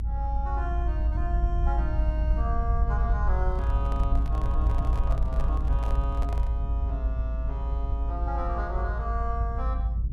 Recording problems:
rumble; below 58 Hz, strongest tone 54 Hz, SNR -8 dB
microphone handling noise; from 3.5 to 6.5 s; peak -1 dB vs average level

